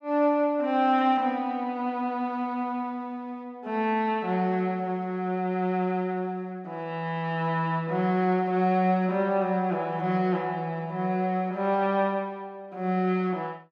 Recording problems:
none

